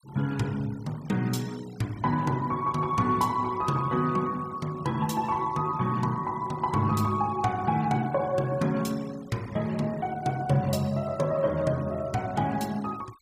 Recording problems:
noise reduction artefacts; signal-to-artefact ratio 23 dB

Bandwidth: 15.5 kHz